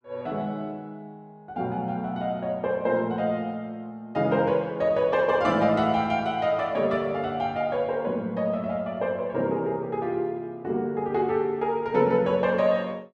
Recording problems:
none

